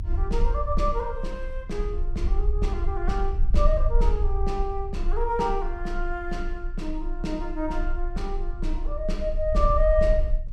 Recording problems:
rumble; below 50 Hz, strongest tone 26 Hz, SNR 0 dB

